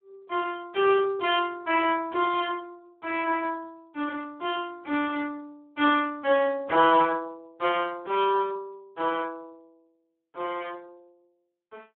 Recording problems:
telephone audio; 240 Hz to 3.5 kHz, Speex

